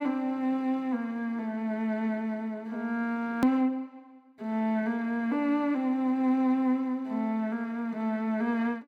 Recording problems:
edit click; at 3.5 s

